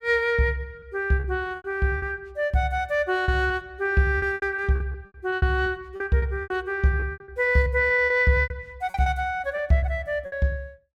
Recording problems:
packet loss; 13% of the sound replaced, filled with repeated pitch periods

